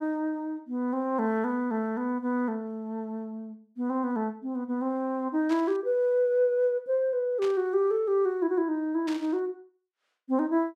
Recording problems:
burst of static; at 5.5 s, at 7.5 s and at 9 s; peak -8 dB vs average level

